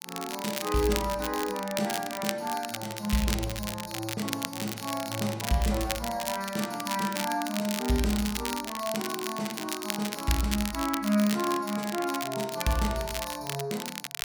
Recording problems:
crackling; vinyl, SNR 5 dB

